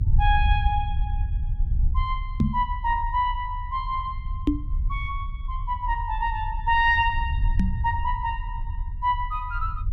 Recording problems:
low-frequency rumble; below 72 Hz, SNR 3 dB
microphone thump; at 2.5 s, at 4.5 s and at 7.5 s; peak +8 dB vs average level

